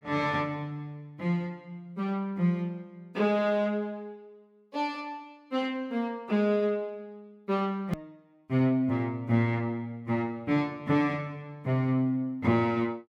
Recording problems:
hard cut with a click; at 8 s

